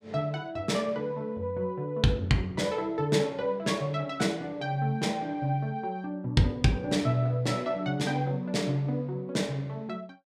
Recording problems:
none

